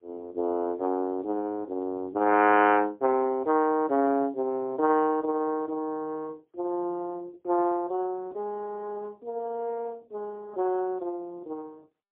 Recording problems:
phone line; 240 Hz to 3.1 kHz, AMR-NB, then MP3

